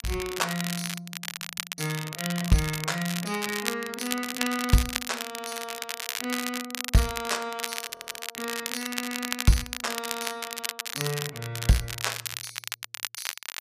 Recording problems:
crackling; vinyl, SNR 3 dB
frozen audio; at 1.5 s and at 8 s

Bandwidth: 14.5 kHz